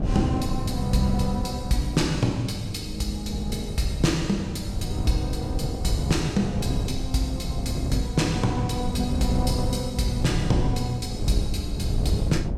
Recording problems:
mains hum; 50 Hz, harmonics up to 550 Hz, SNR 19 dB
wind noise; below 170 Hz, SNR 4 dB

